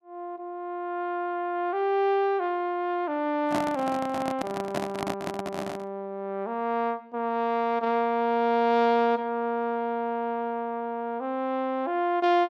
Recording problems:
handling noise; from 3.5 to 6 s; peak +2 dB vs average level

